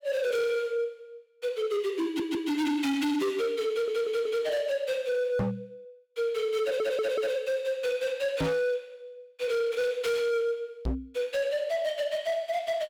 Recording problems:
distorted audio; hard clipping, signal-to-distortion ratio 7 dB
stutter; at 2 s, at 3.5 s and at 6.5 s
microphone thump; at 5.5 s, at 8.5 s and at 11 s; peak +4 dB vs average level

